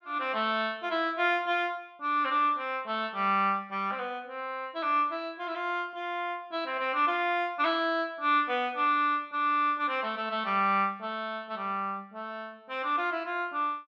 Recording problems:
none

